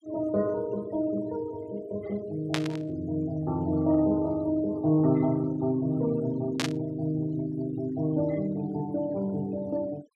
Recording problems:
denoising artefacts; signal-to-artefact ratio 24 dB
static burst; at 2.5 s and at 6.5 s; peak +3 dB vs average level

